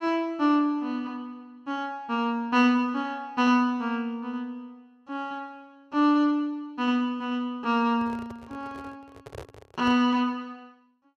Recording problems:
microphone handling noise; from 8 to 10 s; peak -9 dB vs average level

